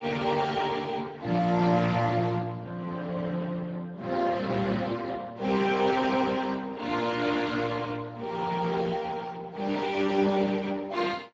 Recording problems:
lossy compression; Speex, log-spectral distance 5 dB

